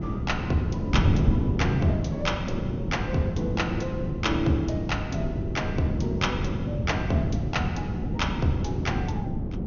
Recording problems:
treble cut off; nothing above 6.6 kHz
wind noise; below 230 Hz, SNR -1 dB

